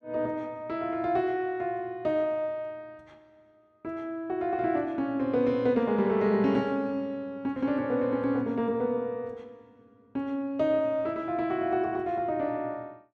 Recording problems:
none

